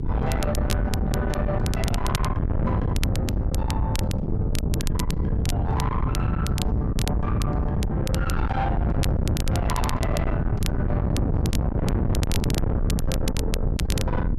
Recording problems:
distorted audio; soft clipping, signal-to-distortion ratio 6 dB
rumble; below 98 Hz, SNR -1 dB
wind noise; below 200 Hz, SNR -5 dB
crackle; vinyl, SNR 7 dB

